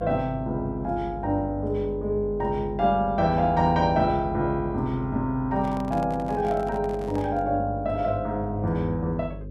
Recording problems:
hum; 50 Hz, harmonics up to 550 Hz, SNR 12 dB
microphone handling noise; from 5.5 to 7.5 s; peak -9 dB vs average level

